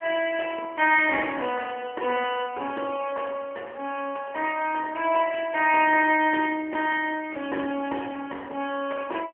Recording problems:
telephone audio; 240 Hz to 3.2 kHz, AMR-NB

